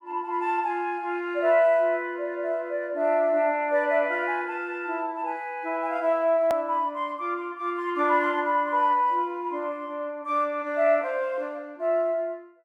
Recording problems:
click at an edit; at 6.5 s

